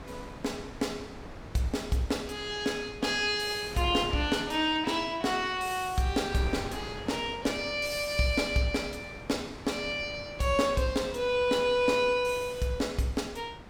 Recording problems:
wind noise; below 980 Hz, SNR 15 dB

